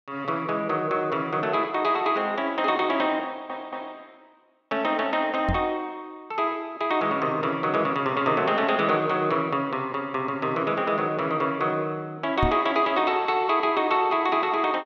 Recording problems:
audio stuttering; at 3.5 s
microphone bump; at 5.5 s and at 12 s; peak +2 dB vs average level

